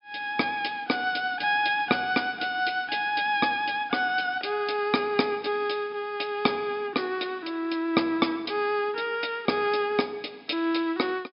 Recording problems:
treble cut off; nothing above 5.5 kHz

